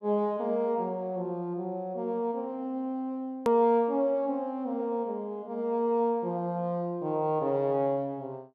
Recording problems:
edit click; at 3.5 s

